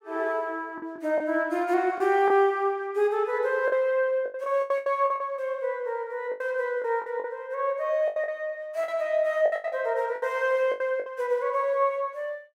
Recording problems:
lost packets; 10% of the sound replaced, filled with the last packet

